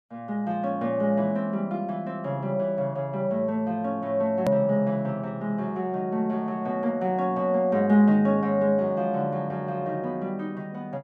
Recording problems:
edit click; at 4.5 s

